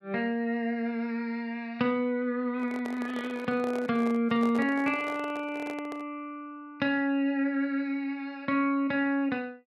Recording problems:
handling noise; from 2.5 to 6 s; peak -7 dB vs average level

